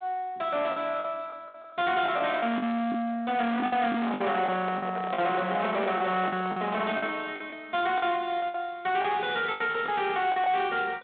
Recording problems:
telephone audio; 260 Hz to 3.6 kHz, G.726
distorted audio; soft clipping, signal-to-distortion ratio 8 dB
lost packets; 10% of the sound replaced, filled with the last packet
microphone handling noise; from 4 to 7 s; peak -1 dB vs average level

